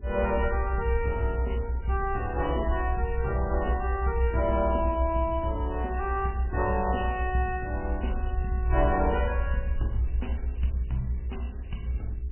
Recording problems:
codec artefacts; MP3, log-spectral distance 5 dB, nothing above 2.4 kHz
electrical hum; 60 Hz, harmonics up to 420 Hz, SNR 19 dB
rumble; below 66 Hz, strongest tone 60 Hz, SNR 1 dB

